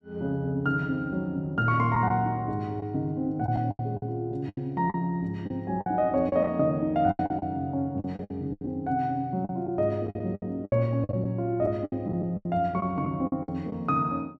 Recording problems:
lost packets; 11% of the sound replaced, filled with the last packet

